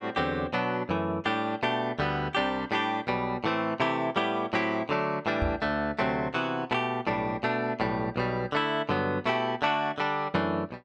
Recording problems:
knock on the microphone; at 5.5 s; peak +1 dB vs average level

